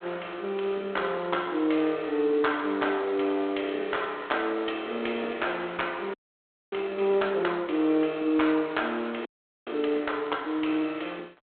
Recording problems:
telephone audio; 240 Hz to 3.8 kHz, G.726
frozen audio; at 6 s for 0.5 s and at 9.5 s

